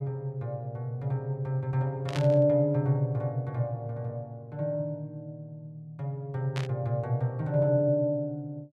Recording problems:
burst of static; at 2 s and at 6.5 s; peak -4 dB vs average level

